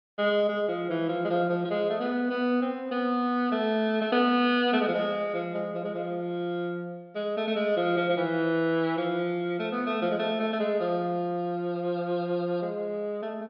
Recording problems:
treble missing; nothing above 5.5 kHz

